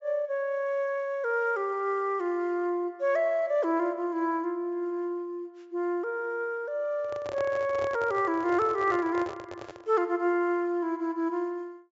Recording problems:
treble cut off; nothing above 7.5 kHz
handling noise; from 7 to 10 s; peak -5 dB vs average level

